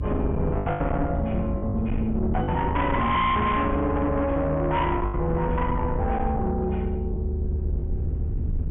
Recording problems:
treble missing; nothing above 3.4 kHz
distorted audio; soft clipping, signal-to-distortion ratio 8 dB
electrical hum; 50 Hz, harmonics up to 450 Hz, SNR 10 dB
rumble; below 130 Hz, SNR 4 dB
lost packets; 5% of the sound replaced, filled with the last packet

